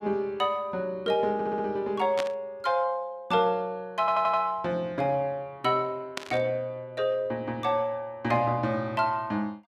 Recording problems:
audio stuttering; at 1.5 s and at 4 s
static burst; at 2 s and at 6 s; peak -1 dB vs average level

